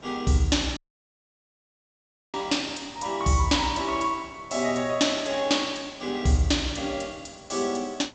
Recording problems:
treble missing; nothing above 8 kHz
hiss; slope -6 dB per octave, SNR 26 dB
audio cutting out; at 1 s for 1.5 s

